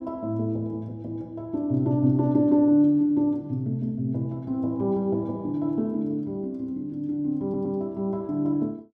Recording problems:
audio stuttering; at 7.5 s

